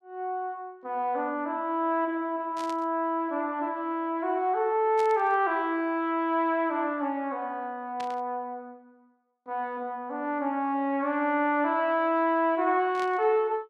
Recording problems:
burst of static; 4 times, first at 2.5 s; peak -10 dB vs average level

